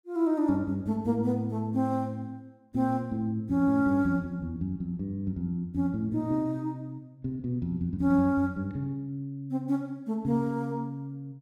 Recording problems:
none

